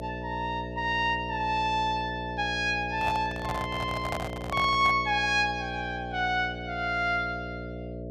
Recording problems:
hum; 60 Hz, harmonics up to 660 Hz, SNR 9 dB
microphone handling noise; from 3 to 5 s; peak -1 dB vs average level

